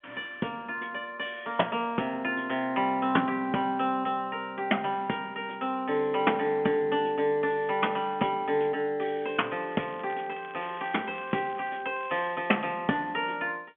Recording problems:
telephone audio; 170 Hz to 3.5 kHz, G.711
crackle; from 9.5 to 12 s; loose cable, SNR 22 dB

